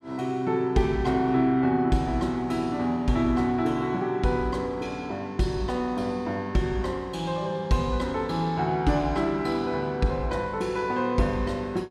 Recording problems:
none

